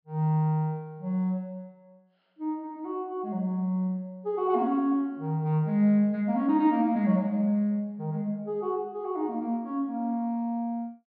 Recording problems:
treble cut off; nothing above 5.5 kHz

